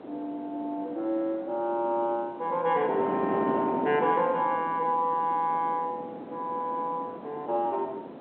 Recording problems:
phone line; 240 Hz to 3.5 kHz, G.711
wind noise; below 660 Hz, SNR 9 dB

